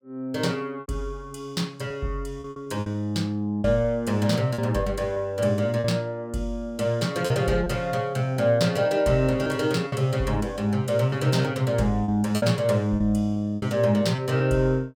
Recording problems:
lost packets; 6% of the sound replaced, filled with repeated pitch periods

